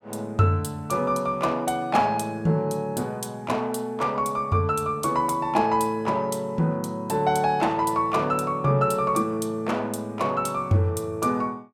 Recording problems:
none

